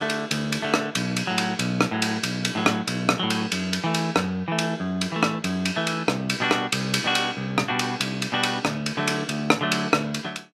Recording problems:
none

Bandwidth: 14.5 kHz